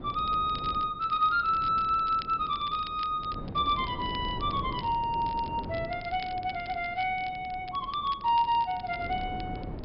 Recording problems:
treble cut off; nothing above 5.5 kHz
wind noise; below 370 Hz, SNR 13 dB
crackling; vinyl, SNR 21 dB

